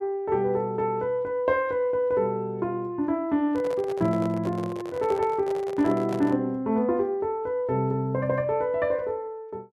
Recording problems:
microphone handling noise; from 3.5 to 6.5 s; peak -7 dB vs average level

